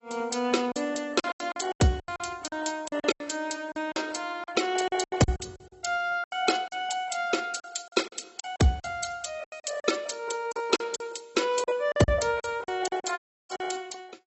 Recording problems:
codec artefacts; AAC, log-spectral distance 6 dB, nothing above 8 kHz
lost packets; 14% of the sound replaced, filled with silence
dropout; at 13 s

